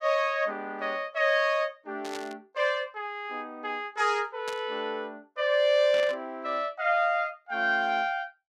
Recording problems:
static burst; at 2 s, at 4.5 s and at 6 s; peak -7 dB vs average level

